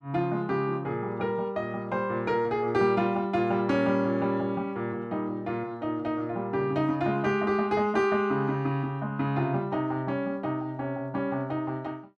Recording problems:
none

